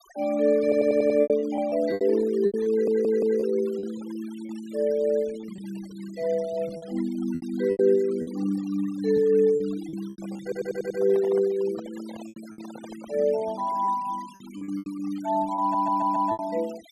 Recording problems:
noise reduction artefacts; signal-to-artefact ratio 21 dB
packet loss; 10% of the sound replaced, filled with repeated pitch periods
audio stuttering; 4 times, first at 0.5 s
handling noise; from 10 to 13 s; peak -12 dB vs average level

